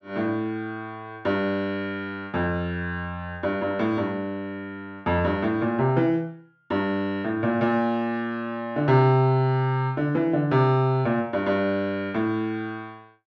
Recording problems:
none

